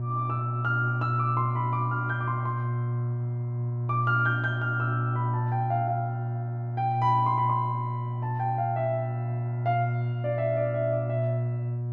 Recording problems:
electrical hum; 60 Hz, harmonics up to 600 Hz, SNR 1 dB

